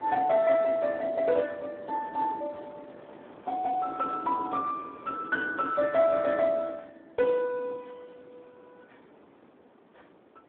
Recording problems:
phone line; 150 Hz to 2.3 kHz, Speex
wind noise; below 860 Hz, SNR 23 dB

